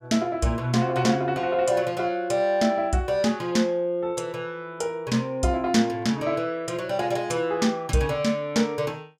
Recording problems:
none

